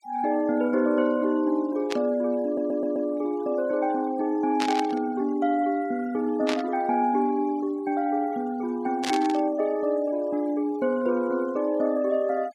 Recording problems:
noise reduction artefacts; signal-to-artefact ratio 23 dB
burst of static; 4 times, first at 2 s; peak 0 dB vs average level
stutter; at 2.5 s

